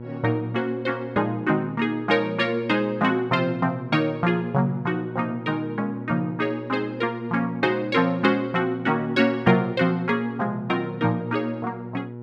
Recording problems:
electrical hum; 60 Hz, harmonics up to 960 Hz, SNR 13 dB

